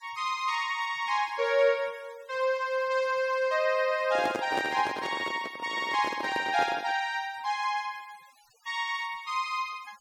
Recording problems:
denoising artefacts; signal-to-artefact ratio 24 dB
microphone handling noise; from 4 to 7 s; peak 0 dB vs average level

